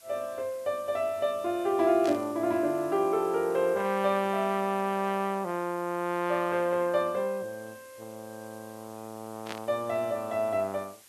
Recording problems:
hiss; slope +1 dB per octave, SNR 24 dB
static burst; at 2 s and at 9.5 s; peak -6 dB vs average level

